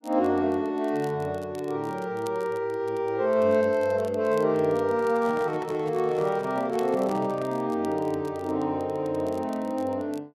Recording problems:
crackle; vinyl, SNR 27 dB
handling noise; from 5 to 7.5 s; peak -10 dB vs average level

